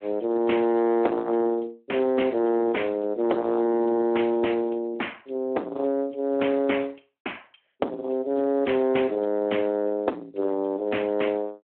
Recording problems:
phone line; 240 Hz to 3.4 kHz, Speex
distortion; soft clipping, signal-to-distortion ratio 9 dB

